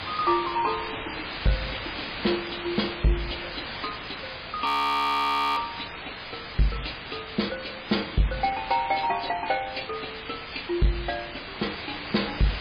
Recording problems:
lossy compression; MP3, log-spectral distance 20 dB, nothing above 16 kHz
distorted audio; soft clipping, signal-to-distortion ratio 11 dB
background hiss; SNR 7 dB
frozen audio; at 4.5 s for 1 s

